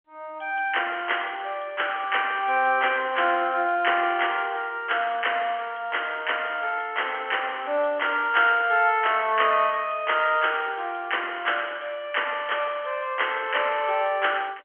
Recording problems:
phone line; 280 Hz to 3.2 kHz, G.711

